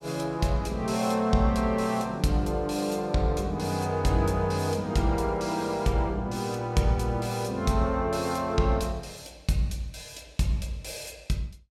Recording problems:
none

